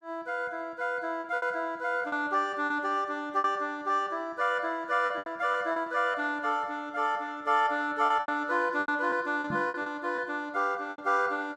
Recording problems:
lost packets; 9% of the sound replaced, filled with repeated pitch periods
microphone thump; at 9.5 s; peak -4 dB vs average level

